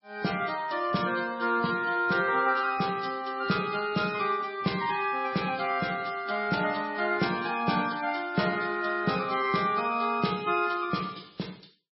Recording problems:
lossy compression; MP3, log-spectral distance 5 dB, nothing above 5.5 kHz

